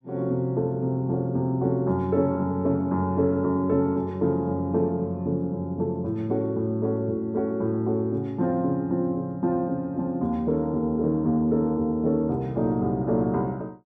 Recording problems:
none

